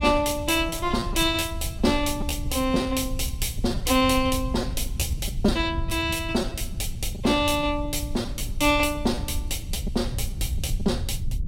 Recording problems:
low-frequency rumble; below 94 Hz, SNR 7 dB
lost packets; 7% of the sound replaced, filled with repeated pitch periods

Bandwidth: 16 kHz